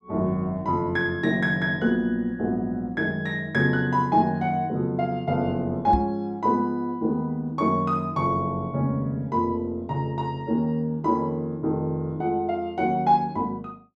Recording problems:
microphone bump; at 6 s; peak +1 dB vs average level

